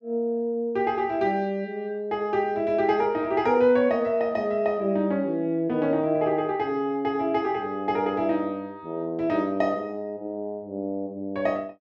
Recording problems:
none

